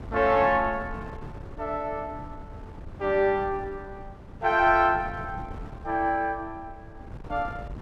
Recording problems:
wind noise; below 280 Hz, SNR 16 dB

